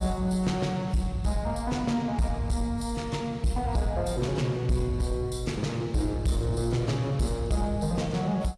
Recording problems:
lossy compression; AAC, log-spectral distance 2 dB
distortion; soft clipping, signal-to-distortion ratio 12 dB

